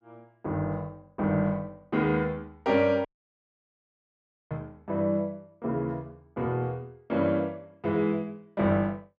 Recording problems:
dropout; at 3 s for 1.5 s

